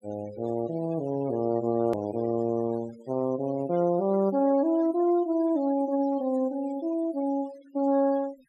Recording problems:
noise reduction artefacts; signal-to-artefact ratio 23 dB
click at an edit; at 2 s

